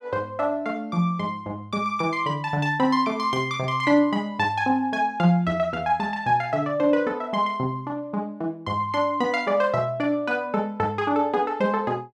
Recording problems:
none

